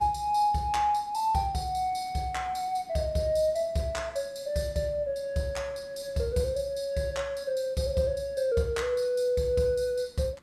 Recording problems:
background hiss; slope -6 dB per octave, SNR 29 dB

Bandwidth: 14 kHz